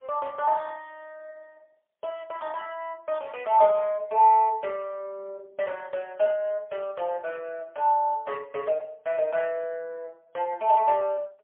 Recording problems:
telephone audio; 340 Hz to 3.4 kHz, AMR-NB, then MP3

